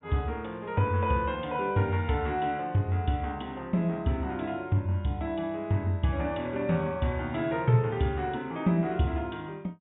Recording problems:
low-pass filter; nothing above 4 kHz

